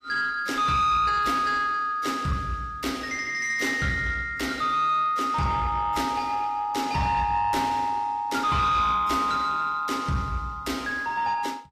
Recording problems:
lossy compression; AAC, log-spectral distance 2 dB, nothing above 14.7 kHz
distorted audio; soft clipping, signal-to-distortion ratio 11 dB

